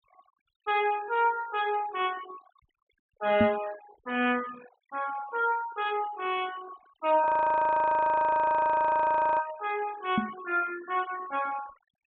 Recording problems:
low-pass filter; nothing above 4 kHz
noise reduction artefacts; signal-to-artefact ratio 19 dB
microphone thump; at 3.5 s and at 10 s; peak +6 dB vs average level
frozen audio; at 7 s for 2 s

